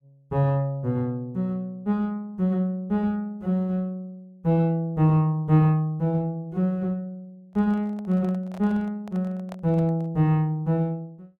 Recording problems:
handling noise; from 7.5 to 10 s; peak -12 dB vs average level

